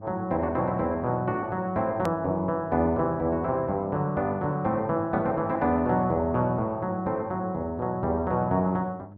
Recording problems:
electrical hum; 50 Hz, harmonics up to 700 Hz, SNR 20 dB
edit click; at 2 s

